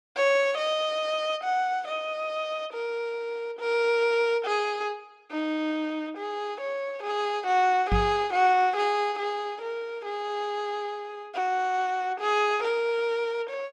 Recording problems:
microphone thump; at 8 s; peak +4 dB vs average level

